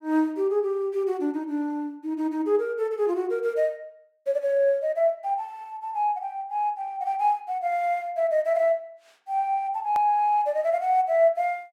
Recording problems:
edit click; at 10 s

